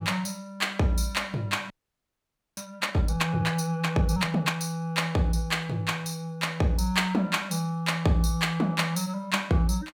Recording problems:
frozen audio; at 1.5 s for 1 s

